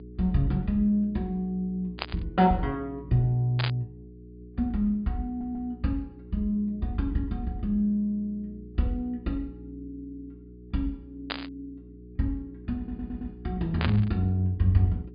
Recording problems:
low-pass filter; nothing above 4.9 kHz
hum; 60 Hz, harmonics up to 420 Hz, SNR 17 dB
static burst; 4 times, first at 2 s; peak +2 dB vs average level
audio stuttering; at 5.5 s and at 13 s

